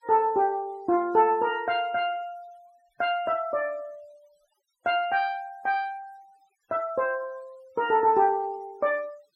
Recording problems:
noise reduction artefacts; signal-to-artefact ratio 28 dB

